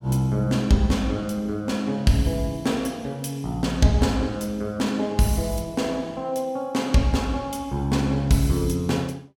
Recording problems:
none

